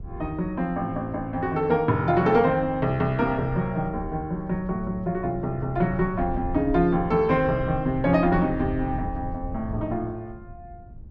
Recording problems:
rumble; below 110 Hz, SNR 13 dB

